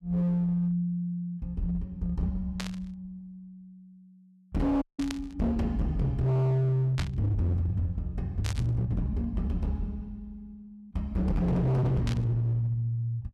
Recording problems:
distortion; hard clipping, signal-to-distortion ratio 6 dB
burst of static; 5 times, first at 2.5 s; peak -2 dB vs average level
dropout; at 5 s

